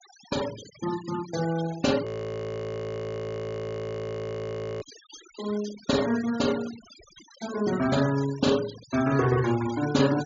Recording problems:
treble cut off; nothing above 7.2 kHz
noise reduction artefacts; signal-to-artefact ratio 13 dB
audio freezing; at 2 s for 3 s

